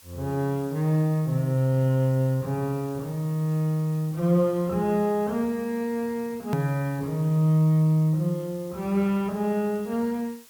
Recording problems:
hiss; slope +1 dB per octave, SNR 24 dB
edit click; at 6.5 s

